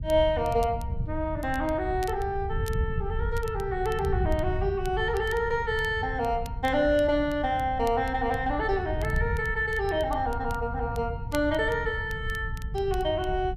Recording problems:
wind on the microphone; below 110 Hz, SNR 7 dB
crackling; vinyl, SNR 23 dB

